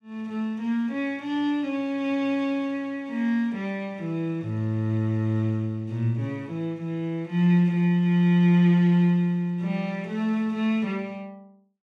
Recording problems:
none

